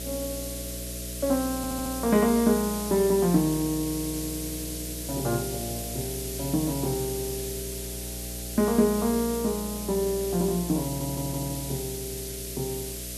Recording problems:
electrical hum; 60 Hz, harmonics up to 660 Hz, SNR 11 dB
background hiss; slope +5 dB per octave, SNR 7 dB
audio stuttering; at 1.5 s and at 11 s

